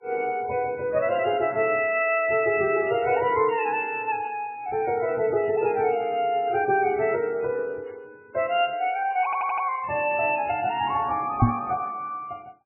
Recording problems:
lossy codec; MP3, log-spectral distance 3 dB, nothing above 2.7 kHz
audio stuttering; at 9 s
microphone bump; at 11 s; peak +9 dB vs average level

